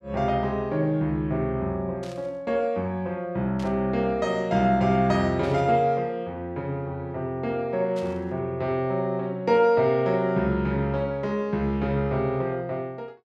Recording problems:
burst of static; 4 times, first at 2 s; peak -14 dB vs average level

